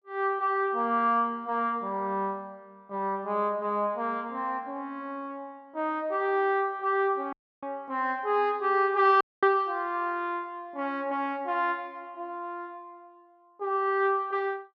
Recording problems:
dropout; at 7.5 s and at 9 s

